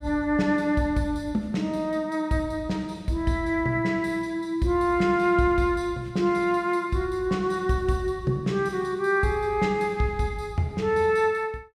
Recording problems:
none

